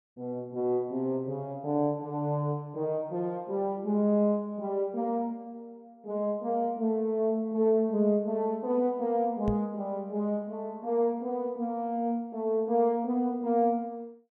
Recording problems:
knock on the microphone; at 9.5 s; peak 0 dB vs average level

